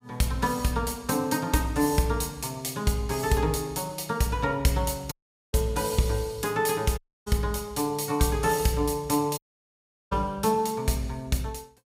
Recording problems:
audio cutting out; at 5 s, at 7 s and at 9.5 s for 0.5 s

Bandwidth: 15.5 kHz